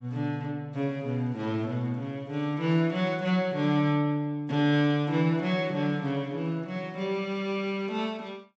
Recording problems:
treble missing; nothing above 8 kHz

